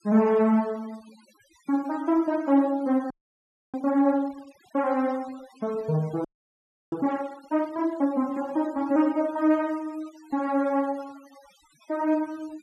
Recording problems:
noise reduction artefacts; signal-to-artefact ratio 25 dB
audio freezing; at 3 s for 0.5 s and at 6.5 s for 0.5 s

